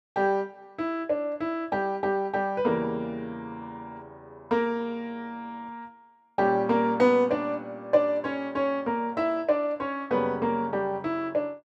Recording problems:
none

